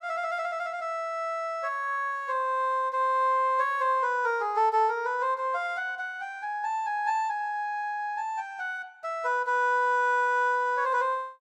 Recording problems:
none

